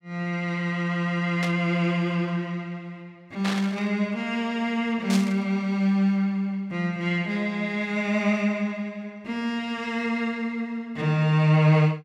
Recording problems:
static burst; at 1.5 s, at 3.5 s and at 5 s; peak -2 dB vs average level

